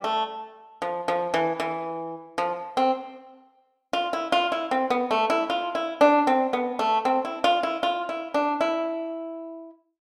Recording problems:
none

